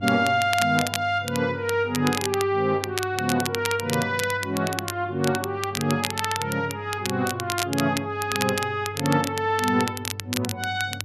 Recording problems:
hum; 50 Hz, harmonics up to 300 Hz, SNR 14 dB
crackling; vinyl, SNR 7 dB

